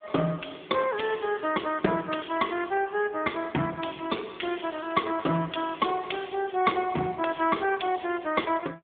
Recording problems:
telephone audio; 150 Hz to 3.4 kHz, AMR-NB

